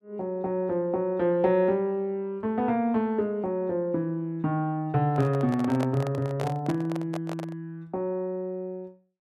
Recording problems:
microphone handling noise; from 5 to 7.5 s; peak -2 dB vs average level

